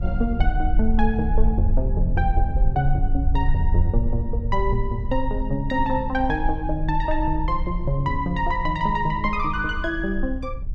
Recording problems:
low-frequency rumble; below 54 Hz, strongest tone 20 Hz, SNR 2 dB

